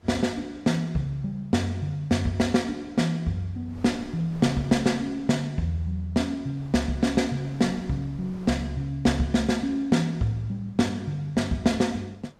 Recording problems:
wind noise; below 650 Hz, SNR 24 dB

